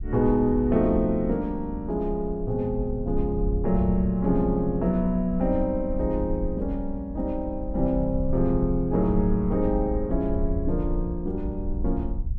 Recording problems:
wind noise; below 64 Hz, SNR 7 dB

